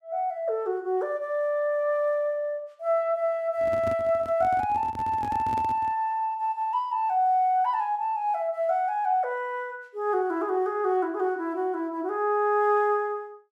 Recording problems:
microphone handling noise; from 3.5 to 6 s; peak -6 dB vs average level

